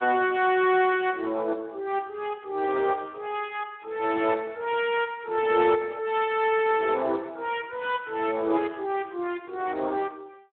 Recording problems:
telephone audio; 280 Hz to 3.7 kHz, Speex

